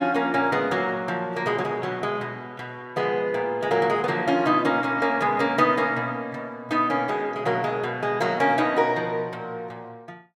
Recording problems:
none

